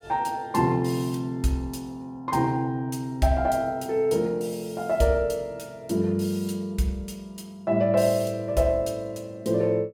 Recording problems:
none

